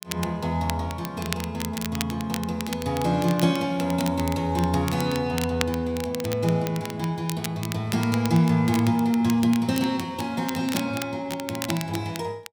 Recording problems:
crackle; vinyl, SNR 11 dB

